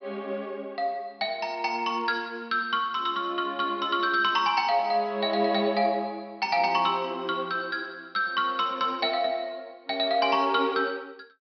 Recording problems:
low-pass filter; nothing above 5.5 kHz

